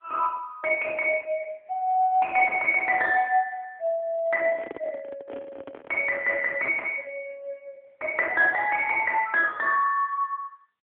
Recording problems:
phone line; 280 Hz to 3.3 kHz, AMR-NB
microphone handling noise; from 4.5 to 6 s; peak -10 dB vs average level

